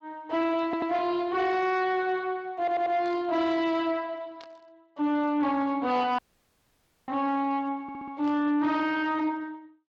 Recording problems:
lossy compression; Speex, log-spectral distance 2 dB
distortion; soft clipping, signal-to-distortion ratio 10 dB
audio stuttering; at 0.5 s, at 2.5 s and at 8 s
burst of static; at 3 s, at 4.5 s and at 8 s; peak -16 dB vs average level
audio cutting out; at 6 s for 1 s

